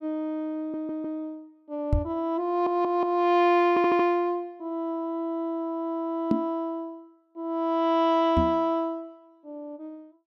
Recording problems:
audio stuttering; at 0.5 s, at 2.5 s and at 3.5 s
microphone bump; at 2 s, at 6.5 s and at 8.5 s; peak +5 dB vs average level

